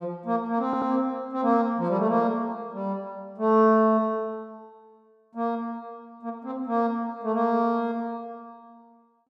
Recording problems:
stutter; at 0.5 s

